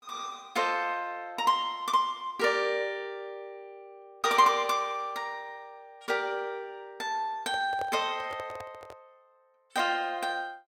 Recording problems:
handling noise; from 7.5 to 9 s; peak -6 dB vs average level

